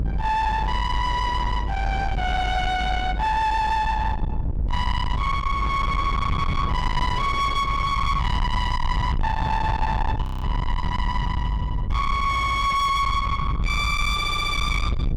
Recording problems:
distorted audio; soft clipping, signal-to-distortion ratio 7 dB
low-frequency rumble; below 710 Hz, SNR 3 dB
wind noise; below 590 Hz, SNR 14 dB
audio freezing; at 10 s
stutter; at 12 s and at 14 s

